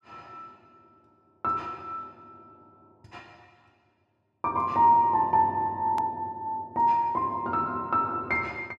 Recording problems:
click at an edit; at 6 s

